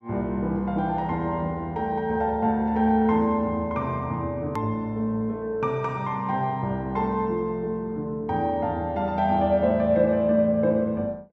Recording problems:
hard cut with a click; at 4.5 s

